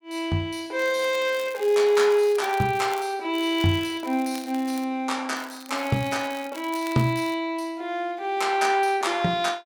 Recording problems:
crackle; from 1 to 3 s, from 3.5 to 5 s and from 5.5 to 7.5 s; loose cable, SNR 20 dB

